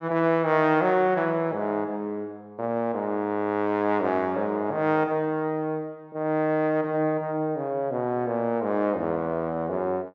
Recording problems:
none

